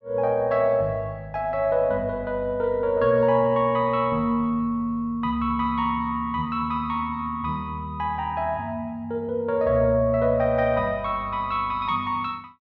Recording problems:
none

